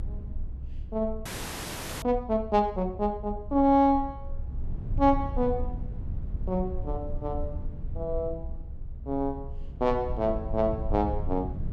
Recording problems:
rumble; below 84 Hz, SNR 9 dB
frozen audio; at 1.5 s for 1 s

